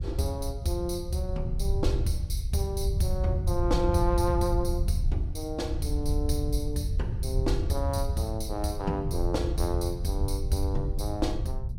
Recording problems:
wind on the microphone; below 88 Hz, SNR 0 dB

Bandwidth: 16 kHz